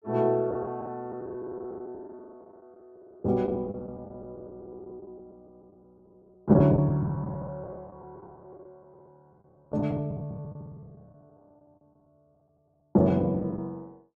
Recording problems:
packet loss; 16% of the sound replaced, filled with the last packet

